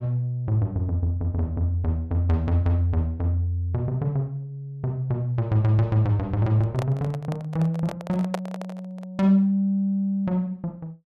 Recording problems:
handling noise; from 6.5 to 9 s; peak 0 dB vs average level

